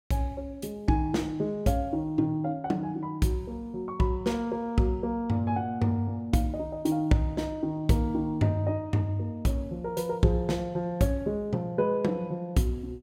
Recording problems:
none

